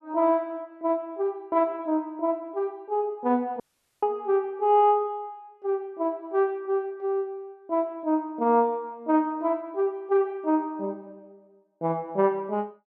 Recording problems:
dropout; at 3.5 s

